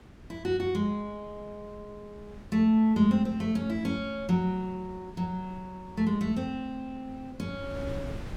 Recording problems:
wind noise; below 300 Hz, SNR 18 dB

